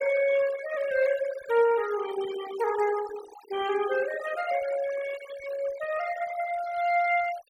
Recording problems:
denoising artefacts; signal-to-artefact ratio 14 dB

